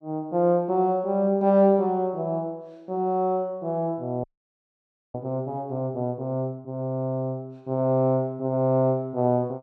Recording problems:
audio freezing; at 4 s for 1 s

